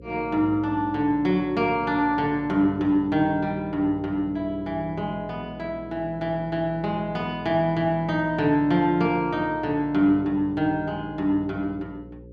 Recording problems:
mains hum; 60 Hz, harmonics up to 540 Hz, SNR 20 dB

